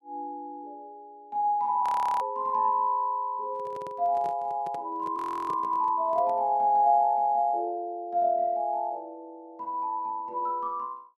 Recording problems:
frozen audio; at 2 s and at 5 s
handling noise; from 3.5 to 6.5 s; peak -11 dB vs average level

